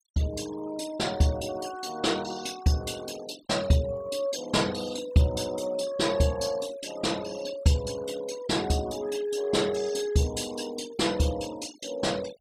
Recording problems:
noise reduction artefacts; signal-to-artefact ratio 17 dB

